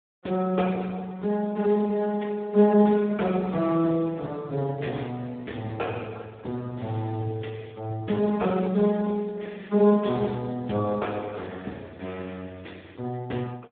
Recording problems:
phone line; 220 Hz to 3.5 kHz, Speex

